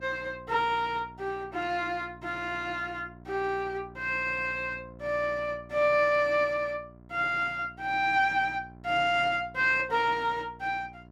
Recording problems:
hum; 60 Hz, harmonics up to 1.4 kHz, SNR 22 dB

